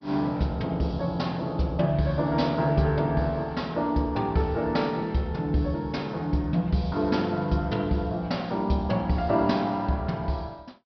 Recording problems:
low-pass filter; nothing above 5.5 kHz
lossy compression; MP2, log-spectral distance 2 dB

